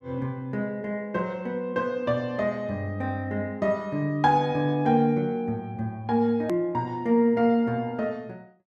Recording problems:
click at an edit; at 6.5 s

